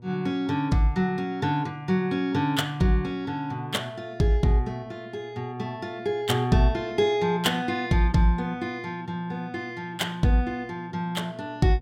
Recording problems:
hum; 60 Hz, harmonics up to 960 Hz, SNR 23 dB

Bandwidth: 16.5 kHz